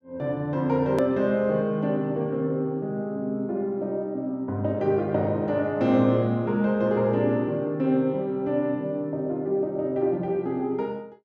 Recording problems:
click at an edit; at 1 s

